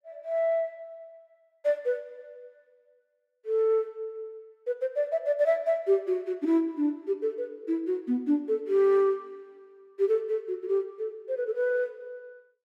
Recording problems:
none

